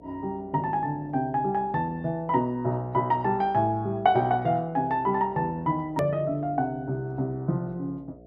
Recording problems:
electrical hum; 60 Hz, harmonics up to 720 Hz, SNR 24 dB
click at an edit; at 6 s

